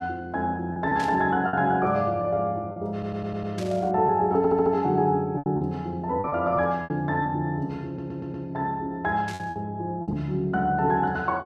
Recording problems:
packet loss; 6% of the sound replaced, filled with repeated pitch periods
burst of static; at 1 s, at 3.5 s and at 9.5 s; peak -9 dB vs average level
audio stuttering; at 3 s, at 4.5 s and at 8 s

